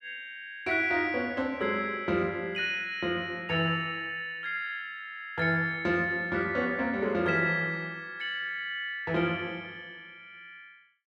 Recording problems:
none

